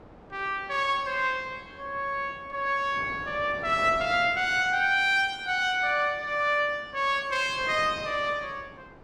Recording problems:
wind on the microphone; below 830 Hz, SNR 20 dB

